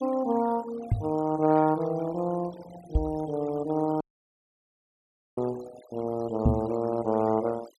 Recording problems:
noise reduction artefacts; signal-to-artefact ratio 20 dB
knock on the microphone; at 1 s, at 3 s and at 6.5 s; peak +8 dB vs average level
dropout; at 4 s for 1.5 s

